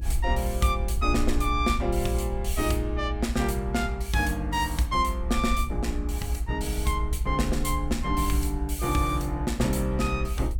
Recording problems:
low-frequency rumble; below 66 Hz, SNR 3 dB

